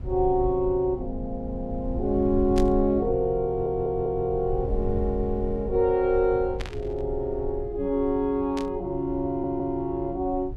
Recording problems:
low-frequency rumble; below 84 Hz, SNR 10 dB
static burst; at 2.5 s, at 6.5 s and at 8.5 s; peak -7 dB vs average level
audio stuttering; at 3.5 s and at 9.5 s

